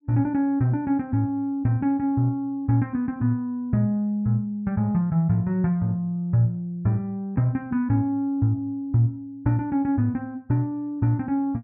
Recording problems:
none

